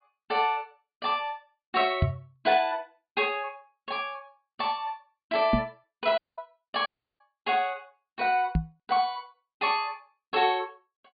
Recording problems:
low-pass filter; nothing above 4.8 kHz
knock on the microphone; at 2 s, at 5.5 s and at 8.5 s; peak +7 dB vs average level
dropout; at 6 s and at 7 s

